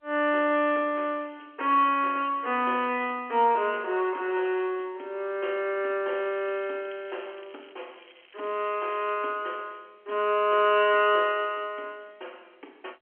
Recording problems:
phone line; 260 Hz to 3.3 kHz, G.711
crackling; from 6 to 9 s; loose cable, SNR 27 dB

